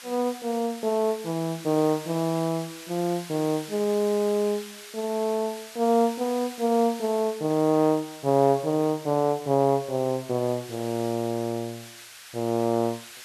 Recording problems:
hiss; SNR 16 dB

